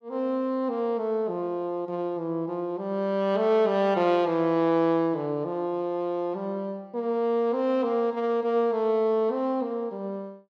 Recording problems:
none

